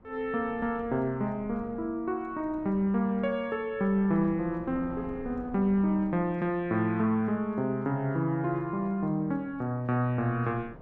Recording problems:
wind on the microphone; below 470 Hz, SNR 20 dB

